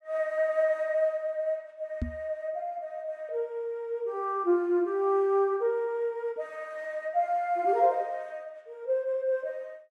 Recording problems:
microphone thump; at 2 s; peak +1 dB vs average level

